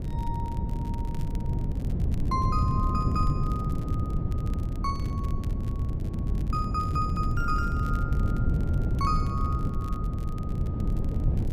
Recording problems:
wind noise; below 150 Hz, SNR -5 dB
crackling; vinyl, SNR 22 dB

